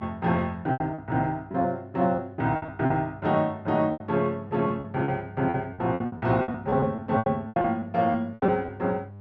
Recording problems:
hum; 50 Hz, harmonics up to 900 Hz, SNR 18 dB
lost packets; 14% of the sound replaced, filled with repeated pitch periods

